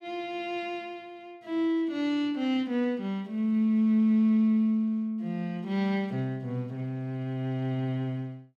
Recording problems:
none

